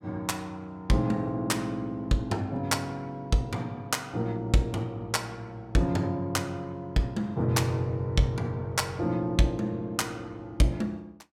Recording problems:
none

